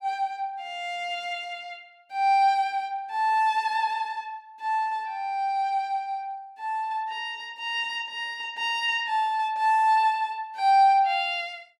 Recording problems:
none

